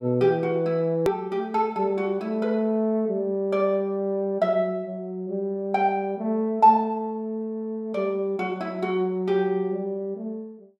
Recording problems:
edit click; at 1 s

